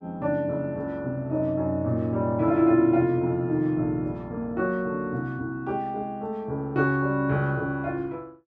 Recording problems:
none

